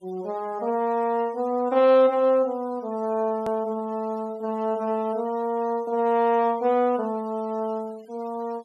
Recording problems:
denoising artefacts; signal-to-artefact ratio 27 dB
click at an edit; at 3.5 s

